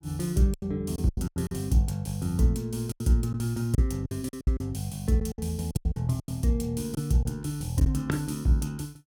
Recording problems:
packet loss; 11% of the sound replaced, filled with silence

